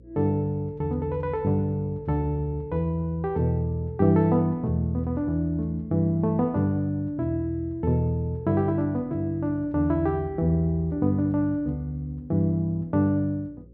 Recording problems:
hum; 60 Hz, harmonics up to 540 Hz, SNR 24 dB

